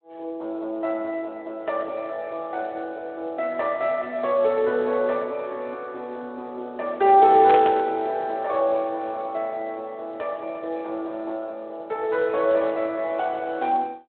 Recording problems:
telephone audio; 280 Hz to 3.6 kHz, Speex
burst of static; at 7.5 s; peak -2 dB vs average level

